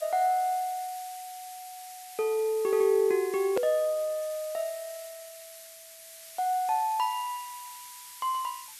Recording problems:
hiss; SNR 16 dB
hard cut with a click; at 3.5 s

